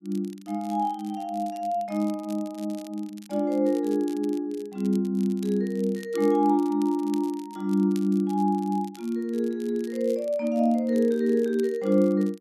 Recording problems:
crackling; vinyl, SNR 25 dB

